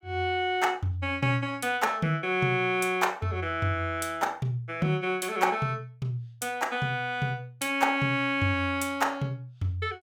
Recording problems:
none

